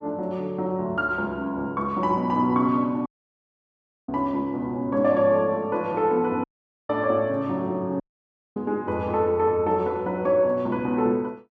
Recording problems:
dropout; at 3 s for 1 s, at 6.5 s and at 8 s for 0.5 s

